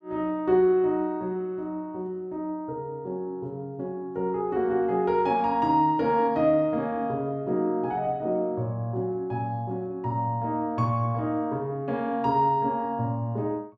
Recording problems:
none

